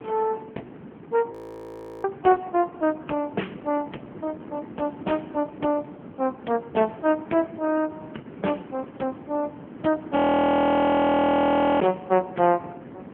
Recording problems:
phone line; 190 Hz to 2.1 kHz, AMR-NB
wind on the microphone; below 450 Hz, SNR 17 dB
audio freezing; at 1.5 s for 0.5 s and at 10 s for 1.5 s

